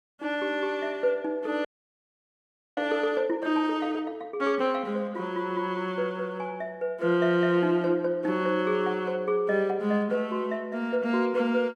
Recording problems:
frozen audio; at 1.5 s for 1 s

